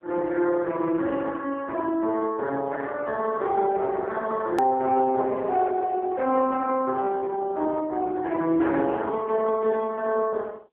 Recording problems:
telephone audio; 280 Hz to 3.3 kHz, AMR-NB
edit click; at 4.5 s

